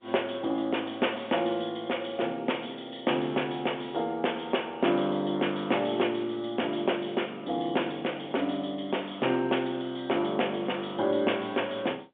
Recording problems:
telephone audio; 280 Hz to 3.5 kHz, G.711

